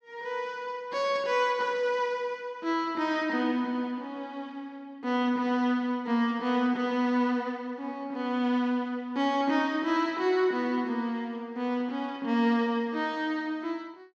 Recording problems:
none

